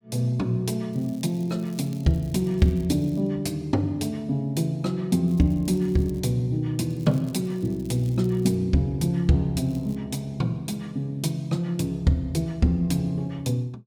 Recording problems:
crackle; 4 times, first at 1 s; loose cable, SNR 28 dB

